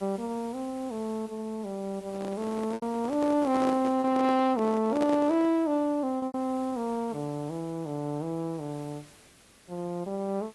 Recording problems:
codec artefacts; AAC, log-spectral distance 4 dB
background hiss; SNR 24 dB
packet loss; 3% of the sound replaced, filled with repeated pitch periods
handling noise; from 2 to 5.5 s; peak -1 dB vs average level

